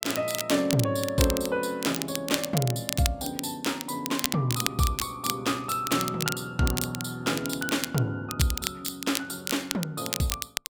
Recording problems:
crackling; vinyl, SNR 5 dB

